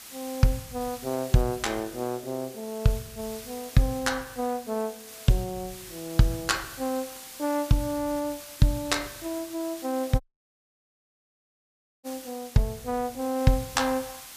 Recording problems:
background hiss; slope +1 dB per octave, SNR 14 dB
audio cutting out; at 10 s for 2 s

